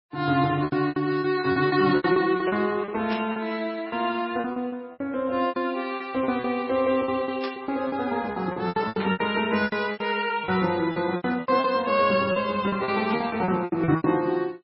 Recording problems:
lossy compression; MP3, log-spectral distance 2 dB, nothing above 5.3 kHz
lost packets; 17% of the sound replaced, filled with repeated pitch periods
static burst; 4 times, first at 3 s; peak -5 dB vs average level

